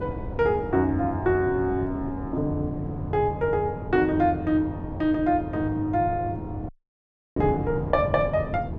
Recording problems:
wind noise; below 290 Hz, SNR 9 dB
audio cutting out; at 6.5 s for 0.5 s

